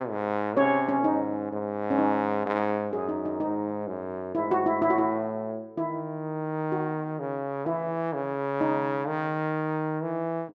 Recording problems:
none

